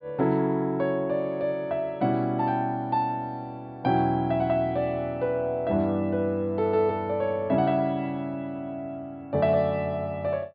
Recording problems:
low-pass filter; nothing above 5.1 kHz

